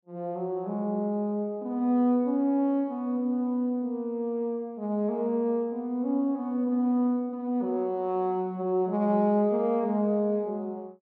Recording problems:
none

